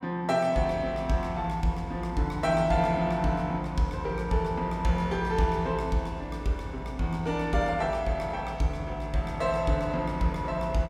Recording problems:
none

